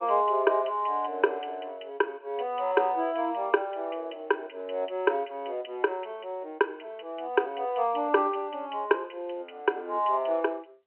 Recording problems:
phone line; 280 Hz to 3.1 kHz, G.711

